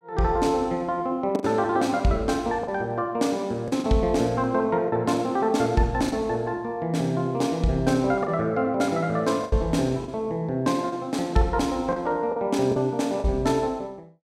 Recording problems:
packet loss; 5% of the sound replaced, filled with the last packet

